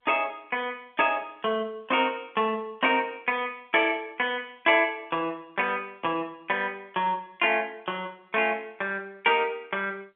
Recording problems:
phone line; 190 Hz to 3.4 kHz, G.711

